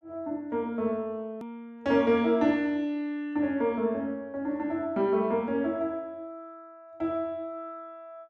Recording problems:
edit click; at 1.5 s

